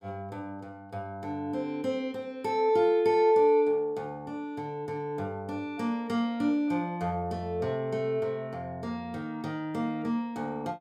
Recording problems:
none

